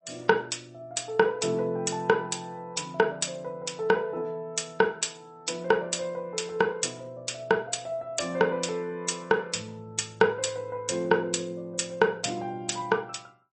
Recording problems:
lossy compression; MP3, log-spectral distance 4 dB, nothing above 8.2 kHz

